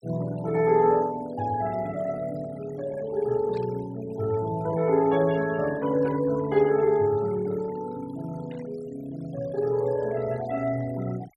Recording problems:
denoising artefacts; signal-to-artefact ratio 20 dB
static burst; at 3.5 s, at 6 s and at 8.5 s; peak -19 dB vs average level

